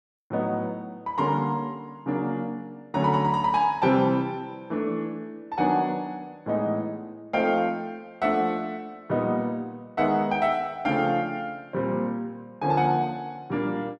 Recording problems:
none

